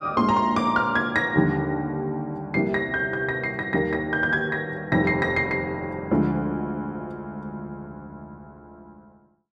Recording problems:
none

